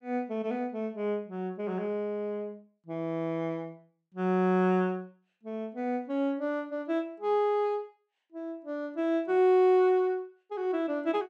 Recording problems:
none

